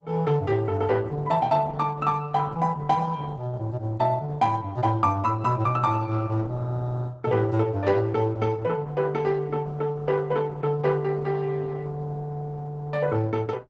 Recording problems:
lossy compression; Opus, log-spectral distance 3 dB, nothing above 8 kHz

